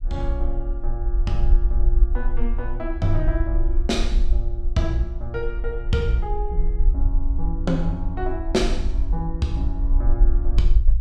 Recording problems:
low-frequency rumble; below 46 Hz, SNR -2 dB

